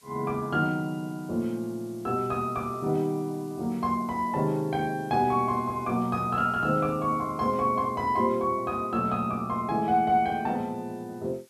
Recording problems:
hiss; slope +2 dB per octave, SNR 28 dB

